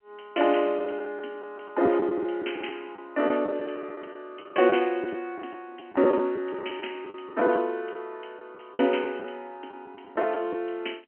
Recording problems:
telephone audio; 240 Hz to 3.2 kHz, G.711
lost packets; 9% of the sound replaced, filled with the last packet

